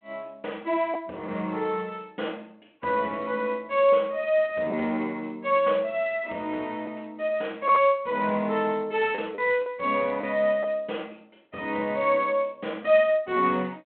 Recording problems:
telephone audio; 220 Hz to 3.5 kHz, G.726
lost packets; 1.6% of the sound replaced, filled with the last packet

